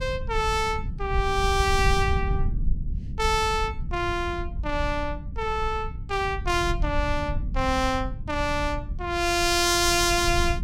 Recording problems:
rumble; below 80 Hz, SNR 7 dB

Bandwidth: 16 kHz